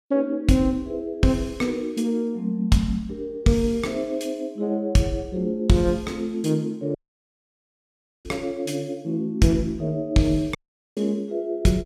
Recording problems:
audio cutting out; at 7 s for 1.5 s and at 11 s

